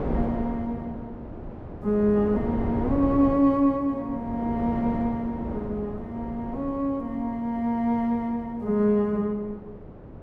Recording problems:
wind noise; below 440 Hz, SNR 10 dB

